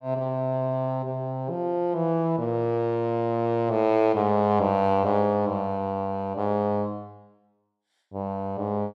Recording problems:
none

